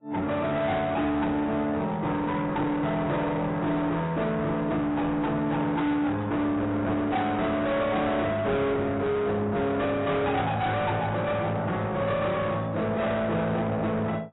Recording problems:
lossy codec; AAC, log-spectral distance 2 dB, nothing above 3.8 kHz
distorted audio; soft clipping, signal-to-distortion ratio 8 dB

